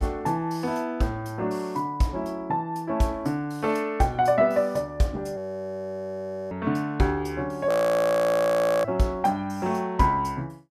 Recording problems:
frozen audio; at 5.5 s for 1 s and at 7.5 s for 1 s

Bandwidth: 14.5 kHz